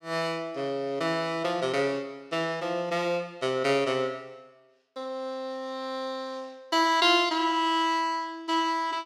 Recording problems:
none

